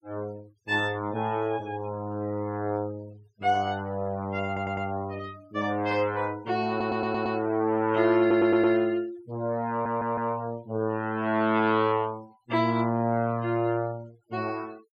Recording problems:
noise reduction artefacts; signal-to-artefact ratio 25 dB
audio stuttering; 4 times, first at 4.5 s

